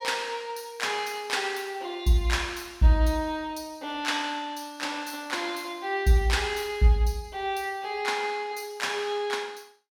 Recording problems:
none

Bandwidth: 17.5 kHz